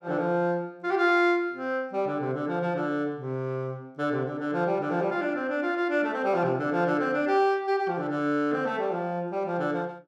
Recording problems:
none

